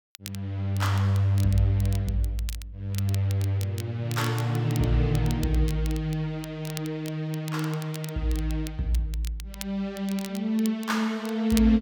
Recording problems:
crackling; vinyl, SNR 16 dB

